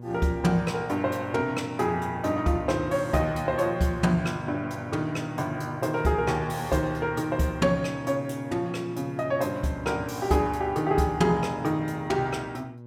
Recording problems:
hum; 60 Hz, harmonics up to 960 Hz, SNR 14 dB

